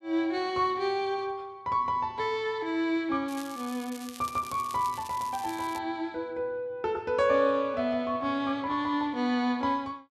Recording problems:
crackling; from 3.5 to 6 s; loose cable, SNR 16 dB

